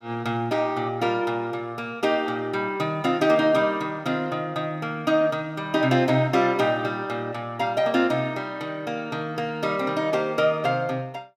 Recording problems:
none

